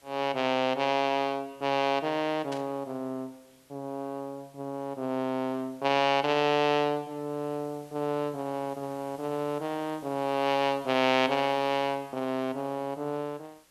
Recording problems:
background hiss; slope -2 dB per octave, SNR 27 dB
burst of static; at 2.5 s; peak -7 dB vs average level

